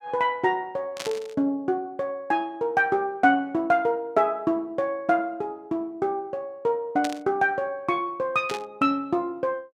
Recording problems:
static burst; at 1 s, at 7 s and at 8.5 s; peak -3 dB vs average level

